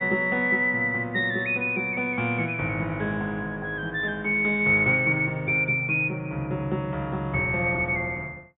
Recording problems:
treble cut off; nothing above 4 kHz

